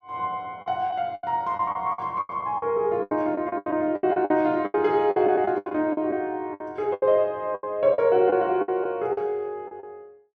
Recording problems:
lost packets; 15% of the sound replaced, filled with the last packet

